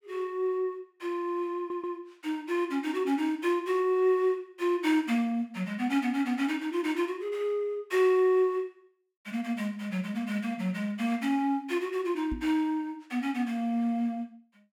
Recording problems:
stutter; at 1.5 s
microphone thump; at 12 s; peak -4 dB vs average level

